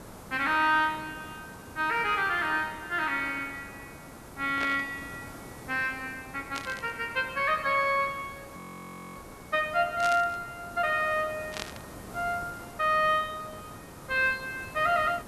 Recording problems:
hiss; SNR 17 dB
static burst; 4 times, first at 4.5 s; peak -3 dB vs average level
audio freezing; at 8.5 s for 0.5 s

